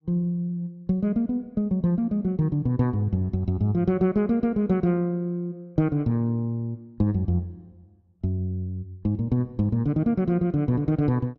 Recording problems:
none

